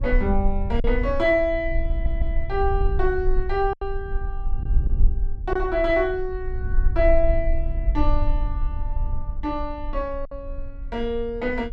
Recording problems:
rumble; below 50 Hz, strongest tone 22 Hz, SNR 3 dB
lost packets; 2% of the sound replaced, filled with silence
stutter; at 2 s

